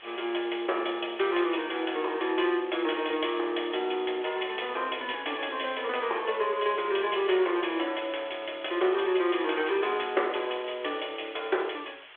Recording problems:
phone line; 300 Hz to 3.6 kHz, G.726
background hiss; SNR 19 dB

